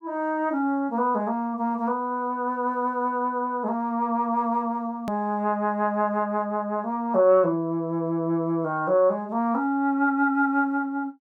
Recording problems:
click at an edit; at 5 s

